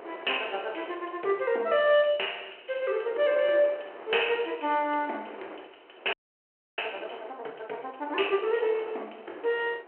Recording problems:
telephone audio; 320 Hz to 3.1 kHz, G.726
wind on the microphone; below 1.1 kHz, SNR 17 dB
audio freezing; at 6 s for 0.5 s

